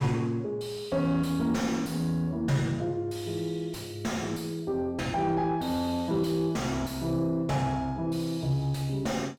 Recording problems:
distortion; soft clipping, signal-to-distortion ratio 6 dB

